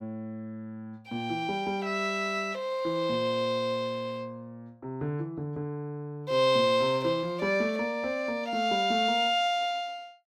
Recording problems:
none

